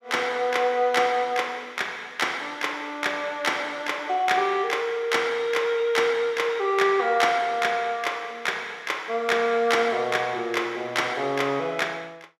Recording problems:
none

